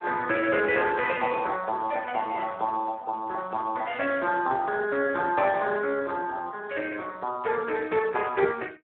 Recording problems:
phone line; 260 Hz to 4 kHz, Speex

